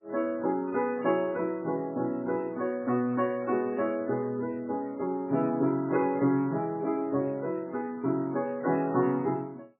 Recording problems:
codec artefacts; MP3, log-spectral distance 2 dB, nothing above 2.8 kHz

